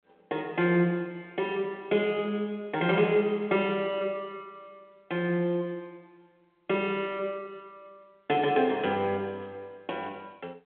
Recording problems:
telephone audio; 280 Hz to 3.5 kHz, G.726

